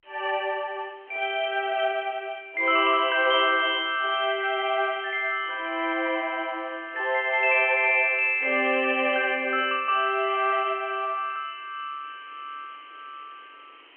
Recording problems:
phone line; 280 Hz to 3.2 kHz, G.711
background hiss; SNR 28 dB

